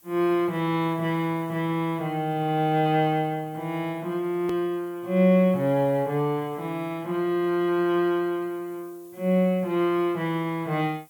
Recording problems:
background hiss; slope -1 dB per octave, SNR 28 dB
edit click; at 4.5 s

